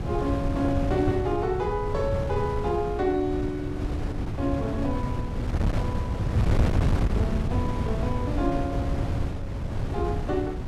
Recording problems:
wind on the microphone; below 190 Hz, SNR -1 dB

